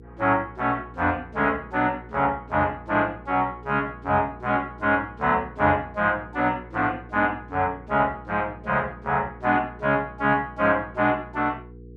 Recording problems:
hum; 60 Hz, harmonics up to 480 Hz, SNR 20 dB

